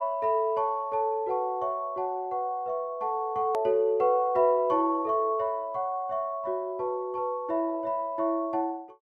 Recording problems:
edit click; at 3.5 s

